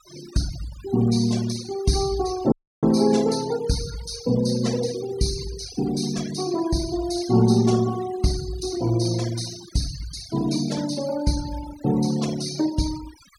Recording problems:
noise reduction artefacts; signal-to-artefact ratio 15 dB
audio cutting out; at 2.5 s

